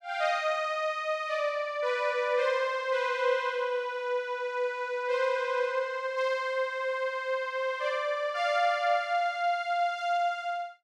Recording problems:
none

